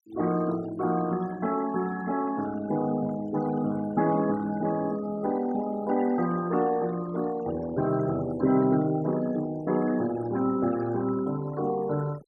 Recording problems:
denoising artefacts; signal-to-artefact ratio 17 dB

